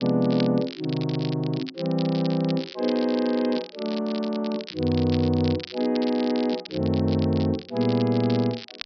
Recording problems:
low-pass filter; nothing above 5.5 kHz
crackling; vinyl, SNR 15 dB

